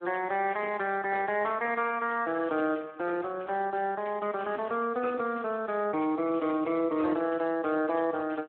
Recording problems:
telephone audio; 260 Hz to 3.3 kHz, Speex

